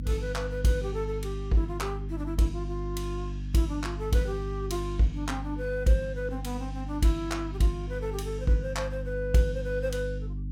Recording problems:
hum; 50 Hz, harmonics up to 300 Hz, SNR 6 dB

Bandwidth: 17 kHz